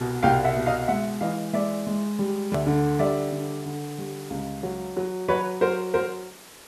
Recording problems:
background hiss; slope -2 dB per octave, SNR 17 dB
hard cut with a click; at 2.5 s

